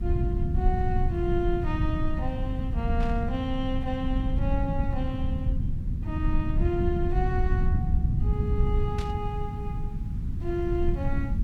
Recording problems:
background hiss; slope -4 dB per octave, SNR 27 dB
rumble; below 110 Hz, SNR -4 dB
burst of static; at 3 s and at 9 s; peak -5 dB vs average level

